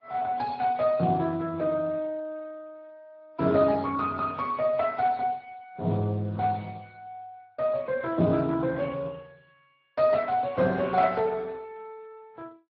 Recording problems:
treble cut off; nothing above 5.5 kHz
lossy codec; AAC, then Speex, log-spectral distance 3 dB

